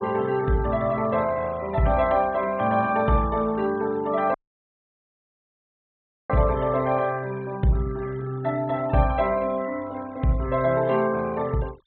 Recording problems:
treble missing; nothing above 4 kHz
denoising artefacts; signal-to-artefact ratio 21 dB
dropout; at 4.5 s for 2 s

